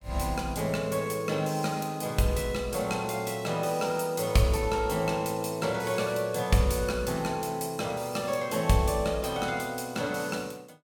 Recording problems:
none

